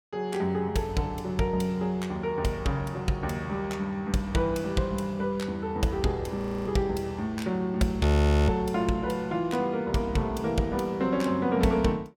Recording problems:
audio freezing; at 6.5 s and at 8 s

